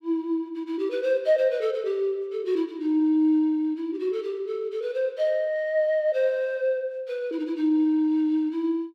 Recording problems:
none

